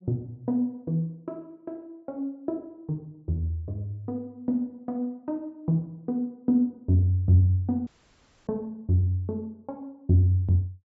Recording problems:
treble cut off; nothing above 7.5 kHz
audio cutting out; at 8 s for 0.5 s

